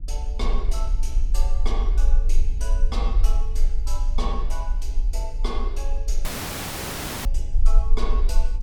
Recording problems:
low-frequency rumble; below 40 Hz, strongest tone 20 Hz, SNR -10 dB
dropout; at 6.5 s for 1 s

